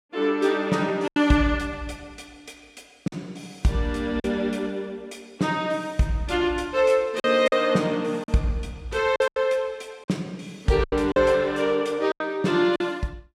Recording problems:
lost packets; 5% of the sound replaced, filled with silence

